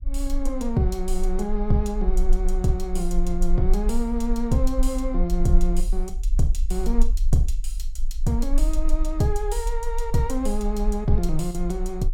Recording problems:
low-frequency rumble; below 36 Hz, strongest tone 20 Hz, SNR 1 dB

